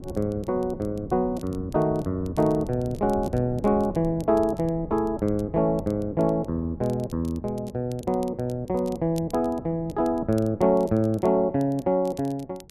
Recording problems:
wind on the microphone; below 220 Hz, SNR 16 dB
crackle; vinyl, SNR 27 dB

